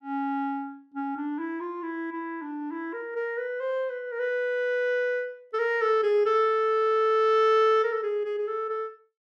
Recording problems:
none

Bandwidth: 14 kHz